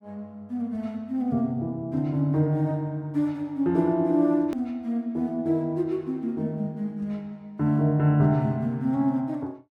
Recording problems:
edit click; at 4.5 s

